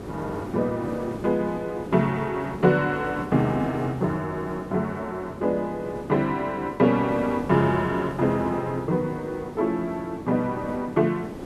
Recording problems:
hiss; slope -9 dB per octave, SNR 11 dB

